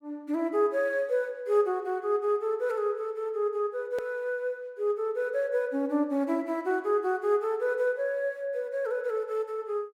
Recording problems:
click at an edit; at 4 s

